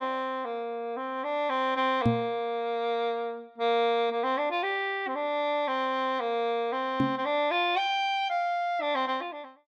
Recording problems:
microphone bump; at 2 s and at 7 s; peak +7 dB vs average level

